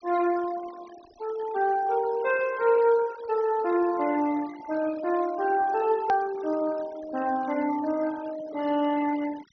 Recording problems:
low-pass filter; nothing above 6.2 kHz
noise reduction artefacts; signal-to-artefact ratio 19 dB
edit click; at 6 s

